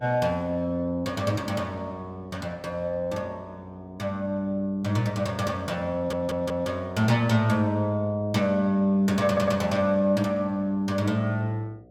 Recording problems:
electrical hum; 60 Hz, harmonics up to 720 Hz, SNR 27 dB
audio stuttering; at 6 s and at 9.5 s

